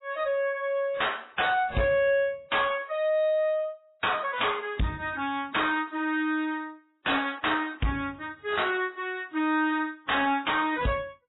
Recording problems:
codec artefacts; AAC, then MP3, log-spectral distance 4 dB, nothing above 3.8 kHz
distorted audio; soft clipping, signal-to-distortion ratio 11 dB

